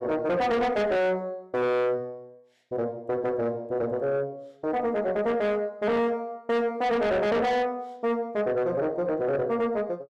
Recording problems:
distortion; soft clipping, signal-to-distortion ratio 6 dB

